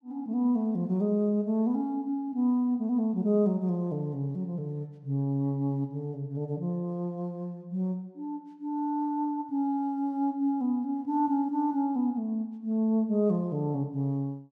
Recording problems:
none

